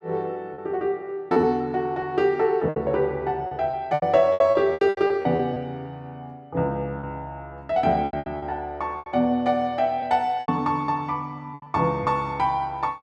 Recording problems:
lost packets; 10% of the sound replaced, filled with repeated pitch periods

